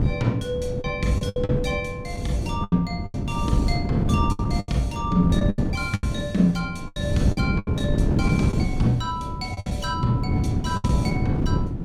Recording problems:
wind noise; below 220 Hz, SNR 0 dB
lost packets; 10% of the sound replaced, filled with the last packet

